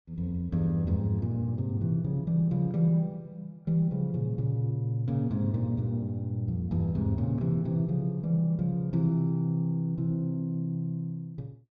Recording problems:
none

